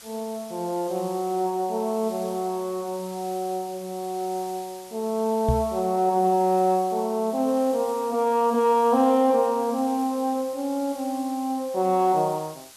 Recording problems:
background hiss; slope +1 dB per octave, SNR 19 dB
microphone thump; at 5.5 s; peak +4 dB vs average level

